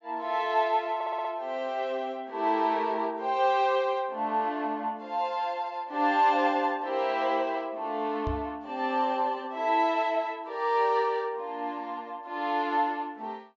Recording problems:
treble cut off; nothing above 8 kHz
audio stuttering; at 1 s
microphone thump; at 8.5 s; peak -2 dB vs average level

